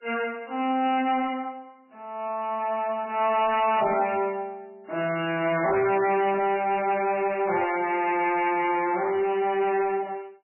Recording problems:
lossy compression; MP3, log-spectral distance 4 dB, nothing above 2.7 kHz
distorted audio; hard clipping, signal-to-distortion ratio 11 dB

